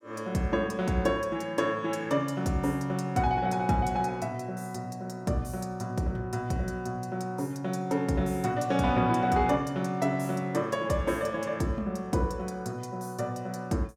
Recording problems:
none

